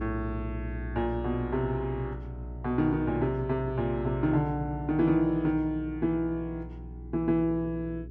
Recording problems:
electrical hum; 60 Hz, harmonics up to 420 Hz, SNR 10 dB

